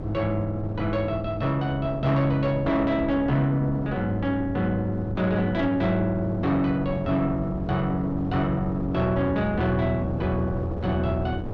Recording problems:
distortion; soft clipping, signal-to-distortion ratio 11 dB
wind noise; below 340 Hz, SNR 10 dB

